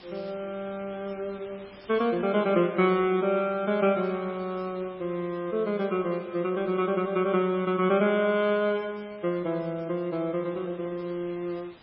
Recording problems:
lossy codec; MP3, log-spectral distance 8 dB, nothing above 5.2 kHz
background hiss; SNR 24 dB

